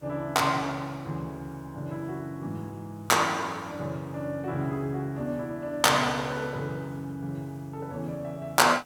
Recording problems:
background hiss; SNR 27 dB

